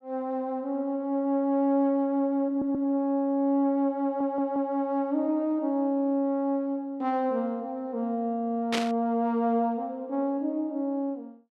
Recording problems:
audio stuttering; at 2.5 s and at 4 s
burst of static; at 8.5 s; peak +2 dB vs average level

